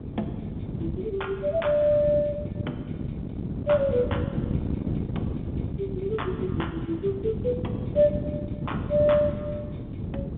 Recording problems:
phone line; 170 Hz to 3.6 kHz, G.711
wind noise; below 270 Hz, SNR 5 dB

